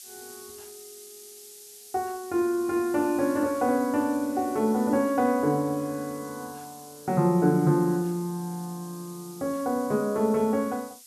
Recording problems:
background hiss; SNR 19 dB

